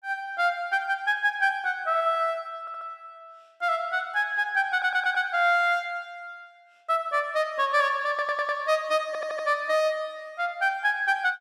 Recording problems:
stutter; 4 times, first at 2.5 s

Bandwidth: 14.5 kHz